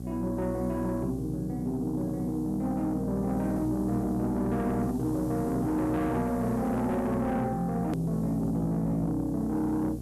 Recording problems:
distorted audio; soft clipping, signal-to-distortion ratio 11 dB
electrical hum; 60 Hz, harmonics up to 720 Hz, SNR 9 dB
hiss; slope +4 dB per octave, SNR 26 dB
hard cut with a click; at 8 s

